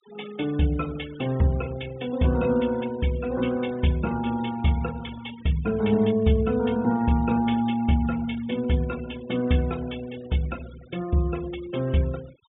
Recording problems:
treble cut off; nothing above 4 kHz
denoising artefacts; signal-to-artefact ratio 20 dB

